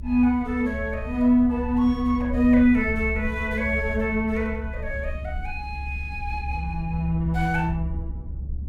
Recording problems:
rumble; below 72 Hz, strongest tone 68 Hz, SNR 9 dB

